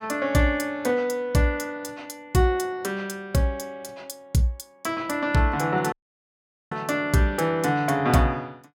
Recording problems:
audio cutting out; at 6 s for 1 s

